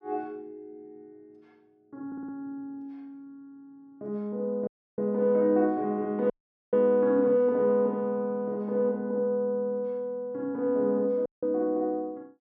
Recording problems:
audio stuttering; at 2 s
dropout; at 4.5 s, at 6.5 s and at 11 s

